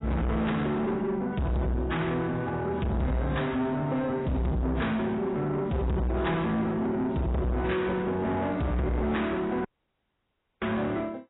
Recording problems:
codec artefacts; AAC, log-spectral distance 2 dB, nothing above 3.8 kHz
distortion; soft clipping, signal-to-distortion ratio 6 dB
audio cutting out; at 9.5 s for 1 s

